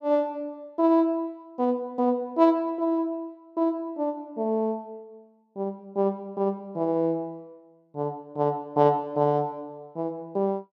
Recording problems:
none

